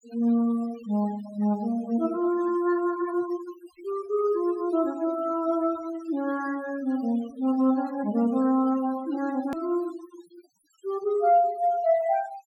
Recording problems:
denoising artefacts; signal-to-artefact ratio 20 dB
click at an edit; at 9.5 s

